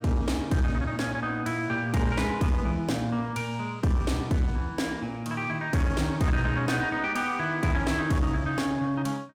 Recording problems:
distorted audio; soft clipping, signal-to-distortion ratio 11 dB

